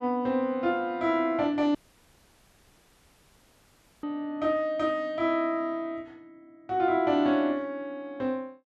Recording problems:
audio cutting out; at 2 s for 2.5 s

